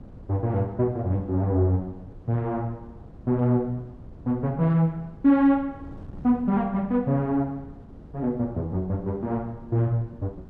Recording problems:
wind on the microphone; below 230 Hz, SNR 20 dB

